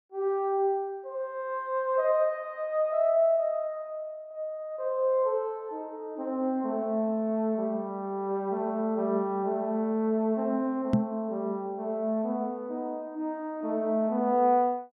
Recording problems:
microphone bump; at 11 s; peak +9 dB vs average level

